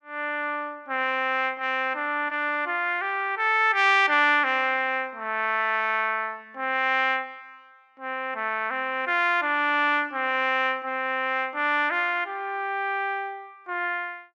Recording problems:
none

